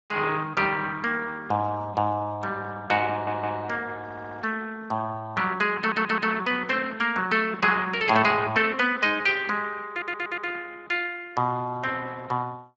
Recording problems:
lossy compression; Speex, log-spectral distance 4 dB, nothing above 7.3 kHz
audio stuttering; 4 times, first at 3 s

